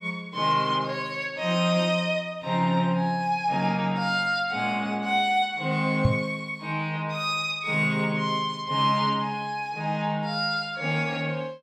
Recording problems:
microphone thump; at 6 s; peak +8 dB vs average level

